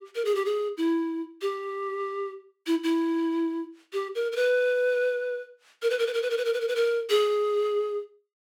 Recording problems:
none

